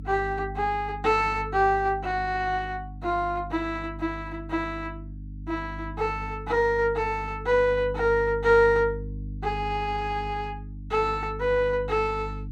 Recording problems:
hum; 50 Hz, harmonics up to 300 Hz, SNR 12 dB

